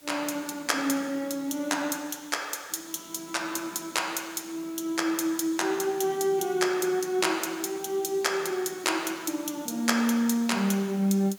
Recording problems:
background hiss; slope -1 dB per octave, SNR 24 dB

